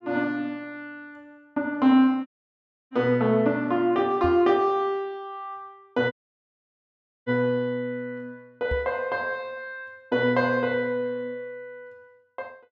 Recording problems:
audio cutting out; at 2.5 s for 0.5 s and at 6 s for 1 s
knock on the microphone; at 4 s and at 8.5 s; peak -3 dB vs average level

